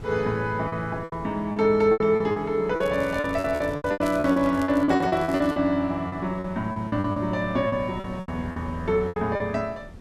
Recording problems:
wind noise; below 300 Hz, SNR 18 dB
lost packets; 16% of the sound replaced, filled with repeated pitch periods
crackling; from 3 to 5.5 s; loose cable, SNR 23 dB

